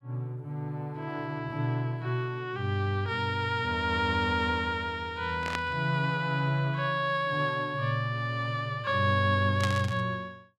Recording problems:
burst of static; at 5.5 s and at 9.5 s; peak 0 dB vs average level

